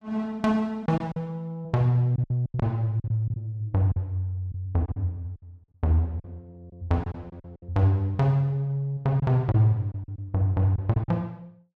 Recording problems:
packet loss; 9% of the sound replaced, filled with silence

